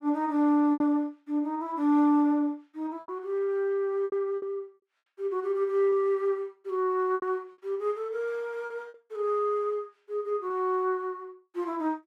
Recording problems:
packet loss; 5% of the sound replaced, filled with repeated pitch periods

